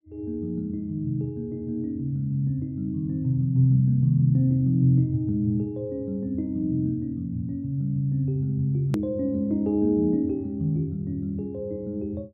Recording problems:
edit click; at 9 s

